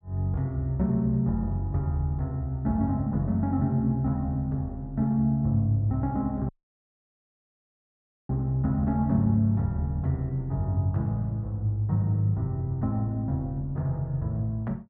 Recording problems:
dropout; at 6.5 s for 2 s

